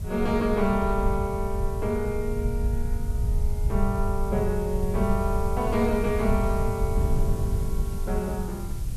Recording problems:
hiss; slope 0 dB per octave, SNR 19 dB
low-frequency rumble; below 82 Hz, SNR 3 dB
wind on the microphone; below 110 Hz, SNR 8 dB

